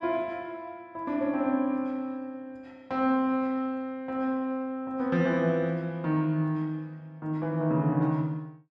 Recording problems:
none

